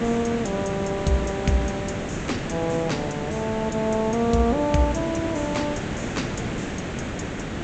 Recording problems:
treble cut off; nothing above 8 kHz
hiss; SNR 4 dB

